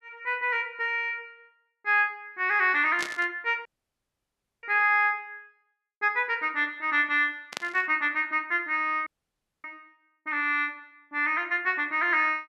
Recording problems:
static burst; at 3 s and at 7.5 s; peak -3 dB vs average level
audio cutting out; at 3.5 s for 1 s and at 9 s for 0.5 s

